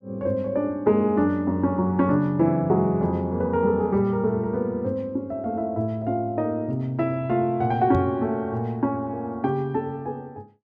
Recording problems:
microphone thump; at 8 s; peak +2 dB vs average level

